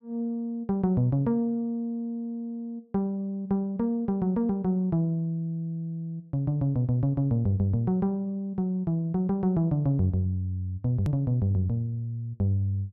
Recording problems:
edit click; at 11 s

